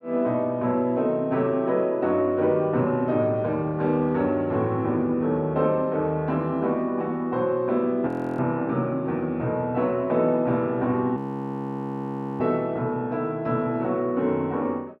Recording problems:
frozen audio; at 8 s and at 11 s for 1 s

